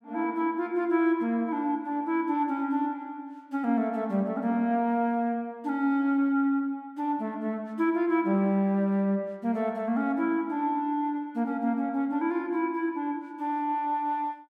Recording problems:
none

